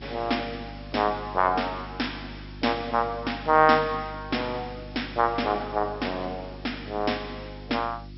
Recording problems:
treble cut off; nothing above 5.4 kHz
mains hum; 50 Hz, harmonics up to 350 Hz, SNR 16 dB
background hiss; slope +2 dB per octave, SNR 28 dB

